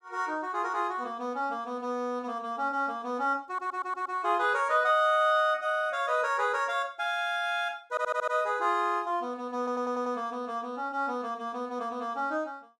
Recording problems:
stutter; at 3.5 s, at 8 s and at 9.5 s

